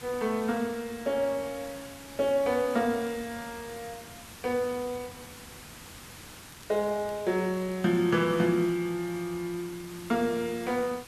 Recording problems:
hiss; slope -2 dB per octave, SNR 16 dB
crackle; at 2.5 s and from 6.5 to 8 s; loose cable, SNR 29 dB

